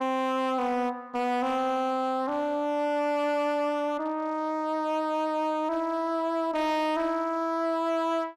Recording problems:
distorted audio; hard clipping, signal-to-distortion ratio 11 dB

